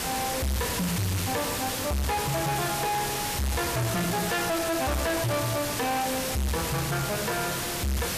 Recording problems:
distorted audio; soft clipping, signal-to-distortion ratio 6 dB
background hiss; slope -2 dB per octave, SNR 1 dB

